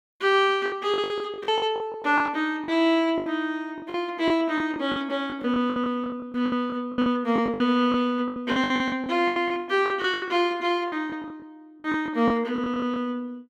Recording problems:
lost packets; 17% of the sound replaced, filled with the last packet

